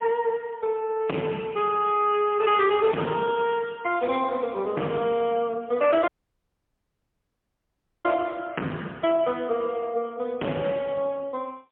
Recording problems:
telephone audio; 220 Hz to 3.3 kHz, AMR-NB, then MP3
distortion; hard clipping, signal-to-distortion ratio 7 dB
audio cutting out; at 6 s for 2 s

